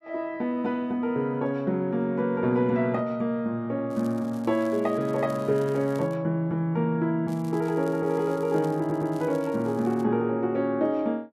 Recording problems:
crackle; from 4 to 6 s and from 7.5 to 10 s; loose cable, SNR 26 dB
stutter; at 9 s

